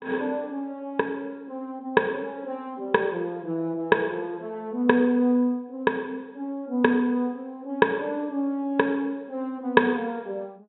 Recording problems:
treble cut off; nothing above 4.1 kHz

